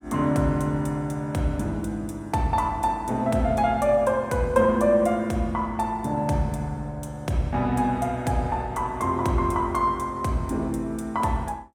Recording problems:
none

